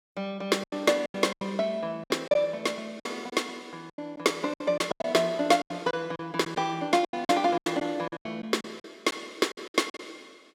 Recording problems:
lost packets; 14% of the sound replaced, filled with silence

